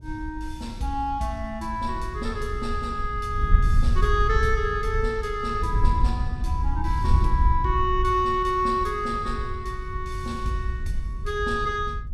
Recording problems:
wind noise; below 72 Hz, SNR 2 dB

